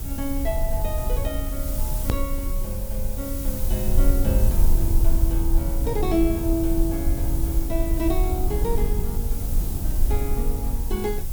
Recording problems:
hiss; slope 0 dB per octave, SNR 5 dB
low-frequency rumble; below 58 Hz, SNR -3 dB
edit click; at 2 s

